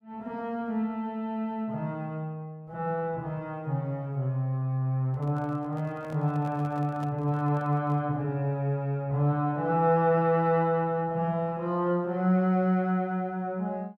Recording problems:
microphone handling noise; from 5 to 8 s; peak -10 dB vs average level

